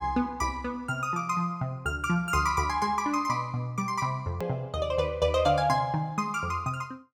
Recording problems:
hard cut with a click; at 4.5 s

